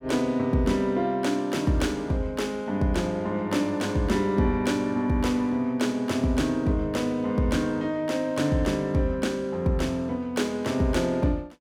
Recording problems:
none

